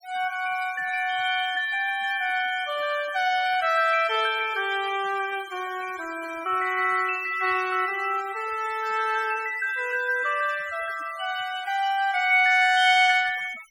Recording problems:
noise reduction artefacts; signal-to-artefact ratio 20 dB

